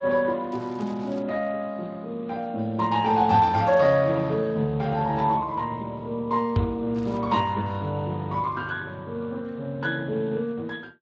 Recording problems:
lossy compression; MP3, then Speex, log-spectral distance 3 dB
crackling; at 0.5 s and at 7 s; loose cable, SNR 27 dB
microphone thump; at 6.5 s; peak +5 dB vs average level

